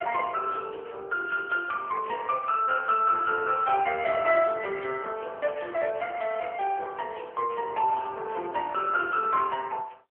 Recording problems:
telephone audio; 340 Hz to 3.2 kHz, AMR-NB

